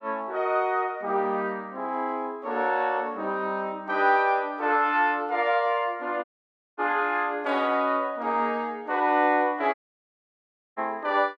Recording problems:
audio cutting out; at 6 s for 0.5 s and at 9.5 s for 1 s

